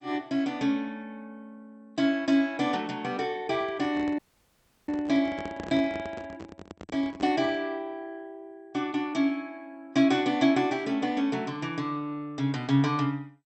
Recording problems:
codec artefacts; MP2, log-spectral distance 2 dB, nothing above 7.8 kHz
microphone handling noise; from 3.5 to 7.5 s; peak -6 dB vs average level
audio cutting out; at 4 s for 0.5 s

